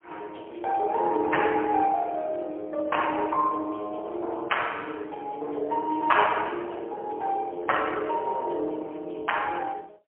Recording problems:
phone line; 280 Hz to 3.1 kHz, AMR-NB, then MP3

